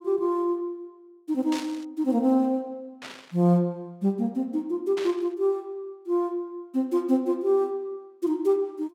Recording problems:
burst of static; at 1.5 s, at 3 s and at 5 s; peak -6 dB vs average level

